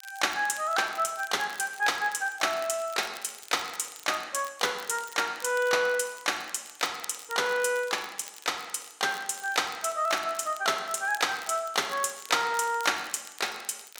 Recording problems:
crackling; vinyl, SNR 19 dB

